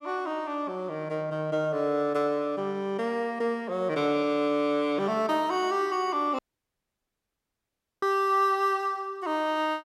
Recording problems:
dropout; at 6.5 s for 1.5 s

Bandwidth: 16 kHz